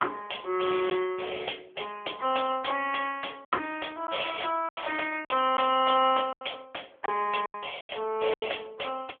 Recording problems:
phone line; 300 Hz to 3.5 kHz, AMR-NB
lost packets; 6% of the sound replaced, filled with silence

